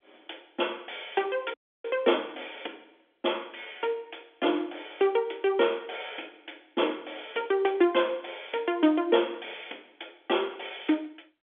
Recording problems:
telephone audio; 260 Hz to 3.5 kHz, G.711
audio cutting out; at 1.5 s

